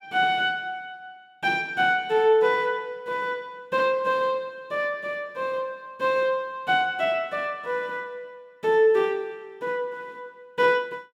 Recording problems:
none

